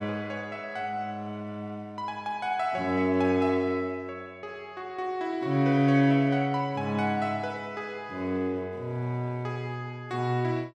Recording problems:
none

